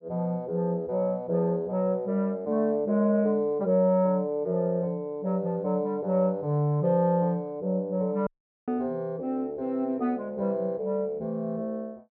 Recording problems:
audio cutting out; at 8.5 s

